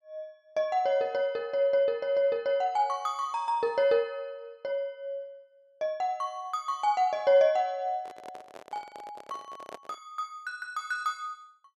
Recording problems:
microphone handling noise; from 8 to 10 s; peak -10 dB vs average level

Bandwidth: 12.5 kHz